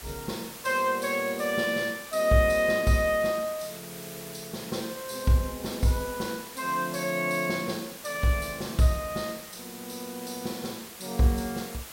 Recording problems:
background hiss; slope -1 dB per octave, SNR 13 dB

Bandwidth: 16 kHz